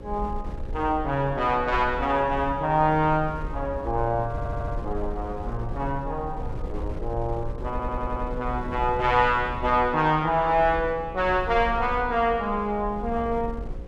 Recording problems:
electrical hum; 60 Hz, harmonics up to 540 Hz, SNR 19 dB
wind on the microphone; below 74 Hz, SNR 12 dB
audio stuttering; at 4.5 s and at 7.5 s

